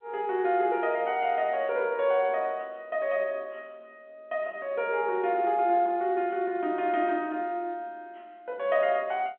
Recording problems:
phone line; 220 Hz to 3.6 kHz, G.711

